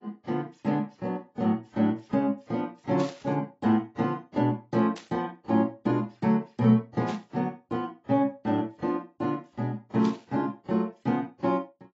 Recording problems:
lossy codec; AAC, log-spectral distance 2 dB, nothing above 7.3 kHz
static burst; 4 times, first at 3 s; peak -10 dB vs average level

